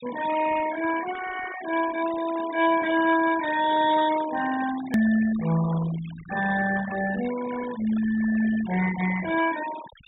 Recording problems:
low-pass filter; nothing above 4 kHz
denoising artefacts; signal-to-artefact ratio 13 dB
click at an edit; at 5 s

